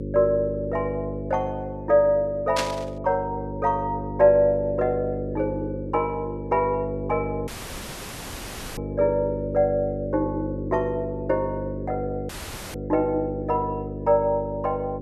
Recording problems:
hum; 50 Hz, harmonics up to 550 Hz, SNR 8 dB
burst of static; at 2.5 s; peak +2 dB vs average level
audio cutting out; at 7.5 s for 1.5 s and at 12 s

